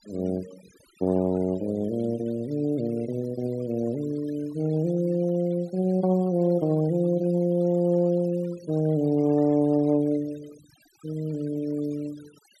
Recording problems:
denoising artefacts; signal-to-artefact ratio 25 dB

